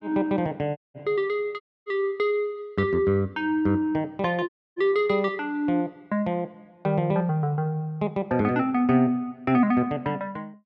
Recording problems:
audio cutting out; at 1 s, at 1.5 s and at 4.5 s

